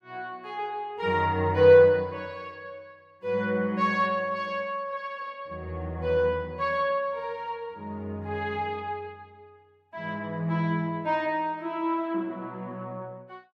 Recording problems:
none

